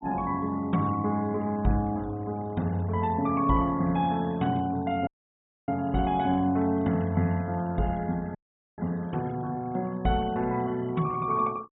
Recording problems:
treble missing; nothing above 4 kHz
noise reduction artefacts; signal-to-artefact ratio 25 dB
audio cutting out; at 5 s for 0.5 s and at 8.5 s

